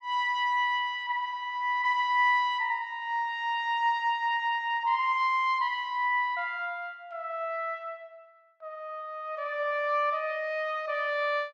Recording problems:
none

